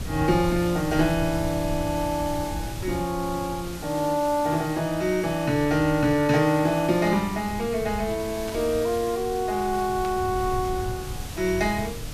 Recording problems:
hiss; slope -2 dB per octave, SNR 14 dB
low-frequency rumble; below 120 Hz, SNR 13 dB
burst of static; at 8.5 s and at 10 s; peak -11 dB vs average level

